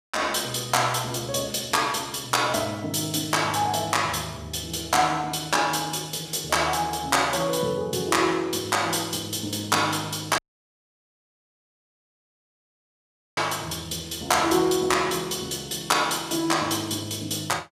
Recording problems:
audio cutting out; at 10 s for 3 s

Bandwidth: 15.5 kHz